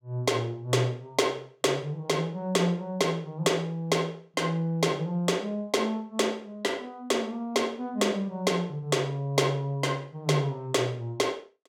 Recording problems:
none

